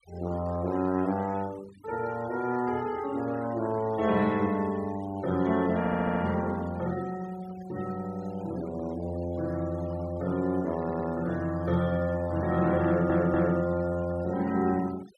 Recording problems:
noise reduction artefacts; signal-to-artefact ratio 19 dB
audio stuttering; at 6 s, at 11 s and at 13 s

